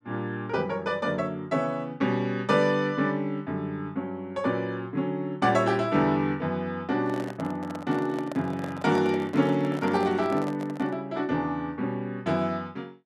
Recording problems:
handling noise; from 7 to 11 s; peak -5 dB vs average level

